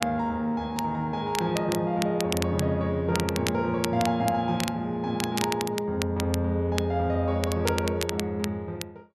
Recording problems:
crackling; vinyl, SNR 9 dB

